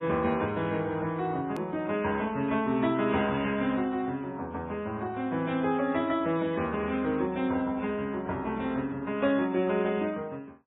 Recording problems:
lossy codec; AAC, then MP3, log-spectral distance 2 dB, nothing above 13.1 kHz
edit click; at 1.5 s

